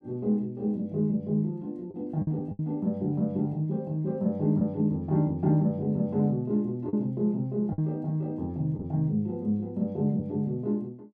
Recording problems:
lost packets; 3% of the sound replaced, filled with the last packet

